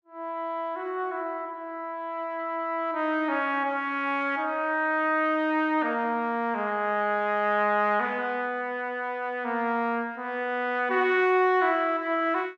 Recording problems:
none

